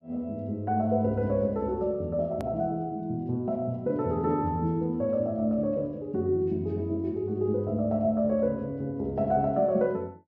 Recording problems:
treble missing; nothing above 8 kHz
hard cut with a click; at 2.5 s

